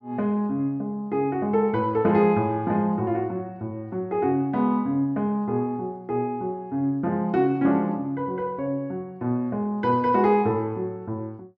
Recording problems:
none

